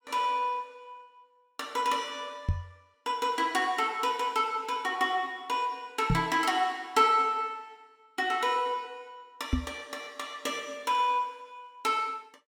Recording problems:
microphone thump; at 2.5 s, at 6 s and at 9.5 s; peak +5 dB vs average level

